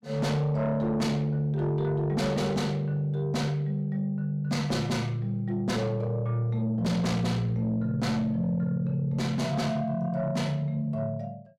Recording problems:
distortion; soft clipping, signal-to-distortion ratio 10 dB

